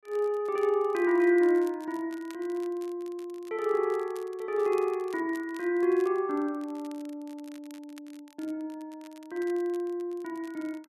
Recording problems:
crackle; vinyl, SNR 26 dB

